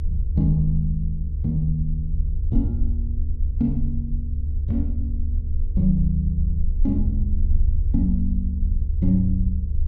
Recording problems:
hum; 50 Hz, harmonics up to 500 Hz, SNR 24 dB
low-frequency rumble; below 74 Hz, SNR 0 dB

